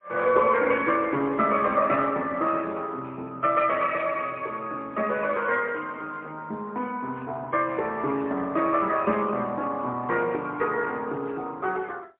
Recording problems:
telephone audio; 220 Hz to 3.3 kHz, AMR-NB, then MP3

